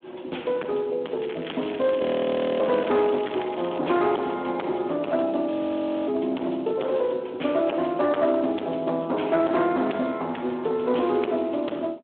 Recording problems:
phone line; 220 Hz to 3.4 kHz, Speex
distortion; hard clipping, signal-to-distortion ratio 10 dB
crackling; from 1 to 4 s; loose cable, SNR 15 dB
frozen audio; at 2 s for 0.5 s and at 5.5 s for 0.5 s

